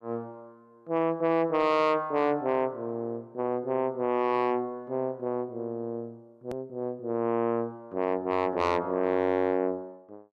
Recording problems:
distorted audio; soft clipping, signal-to-distortion ratio 11 dB
hard cut with a click; at 6.5 s

